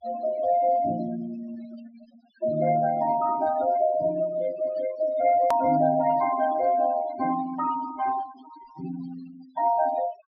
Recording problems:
treble missing; nothing above 5.5 kHz
denoising artefacts; signal-to-artefact ratio 15 dB
edit click; at 5.5 s

